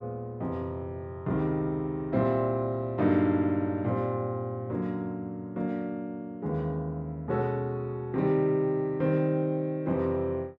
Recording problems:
none

